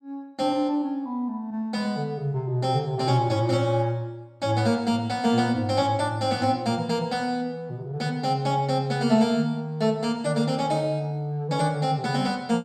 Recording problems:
none

